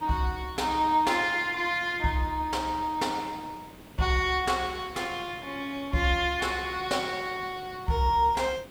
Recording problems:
hiss; slope -5 dB per octave, SNR 21 dB

